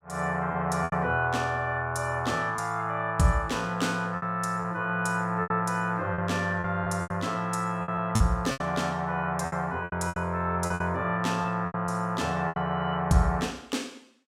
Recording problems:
lost packets; 8% of the sound replaced, filled with repeated pitch periods

